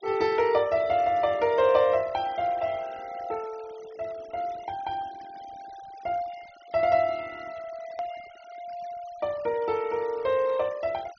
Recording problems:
low-pass filter; nothing above 6.4 kHz
denoising artefacts; signal-to-artefact ratio 23 dB
hard cut with a click; at 8 s

